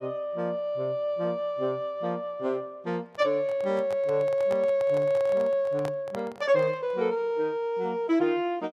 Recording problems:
microphone handling noise; from 3 to 7 s; peak -6 dB vs average level

